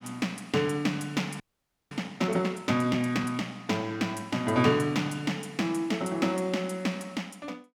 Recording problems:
frozen audio; at 1.5 s for 0.5 s

